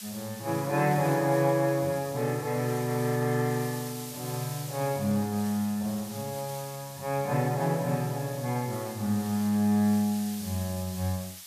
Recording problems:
hiss; slope +4 dB per octave, SNR 13 dB

